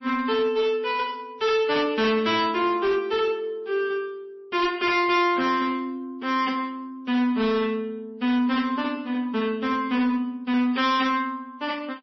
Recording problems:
lossy compression; MP3, log-spectral distance 2 dB, nothing above 5.7 kHz
distorted audio; hard clipping, uneven, signal-to-distortion ratio 12 dB

